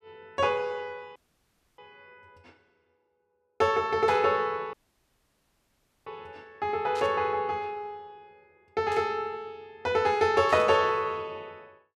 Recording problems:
audio cutting out; at 1 s for 0.5 s and at 4.5 s for 1.5 s
static burst; 4 times, first at 4 s; peak -12 dB vs average level

